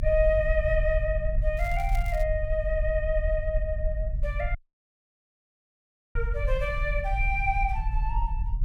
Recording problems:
low-frequency rumble; below 50 Hz, strongest tone 34 Hz, SNR 1 dB
crackle; at 1.5 s; loose cable, SNR 20 dB
dropout; at 4.5 s for 1.5 s

